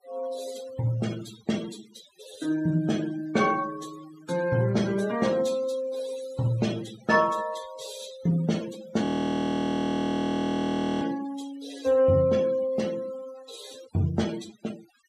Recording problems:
denoising artefacts; signal-to-artefact ratio 16 dB
frozen audio; at 9 s for 2 s

